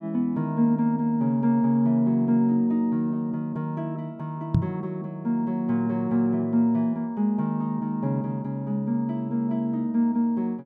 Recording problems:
microphone thump; at 4.5 s; peak +7 dB vs average level

